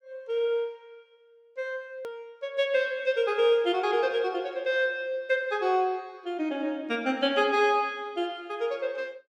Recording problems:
edit click; at 2 s

